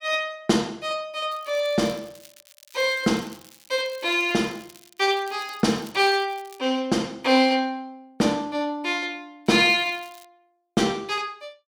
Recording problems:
crackling; from 1.5 to 6.5 s and at 9.5 s; loose cable, SNR 25 dB

